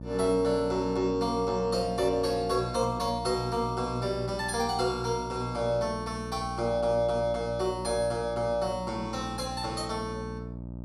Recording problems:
hum; 60 Hz, harmonics up to 900 Hz, SNR 10 dB

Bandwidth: 14 kHz